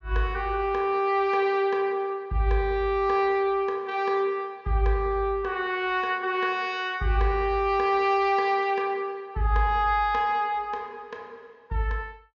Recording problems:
treble missing; nothing above 7.1 kHz

